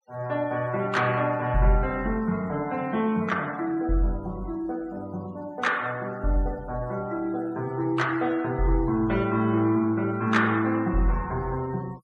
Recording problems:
noise reduction artefacts; signal-to-artefact ratio 24 dB

